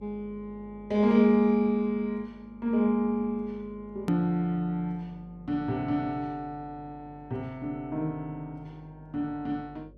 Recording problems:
mains hum; 50 Hz, harmonics up to 600 Hz, SNR 25 dB
hard cut with a click; at 4 s

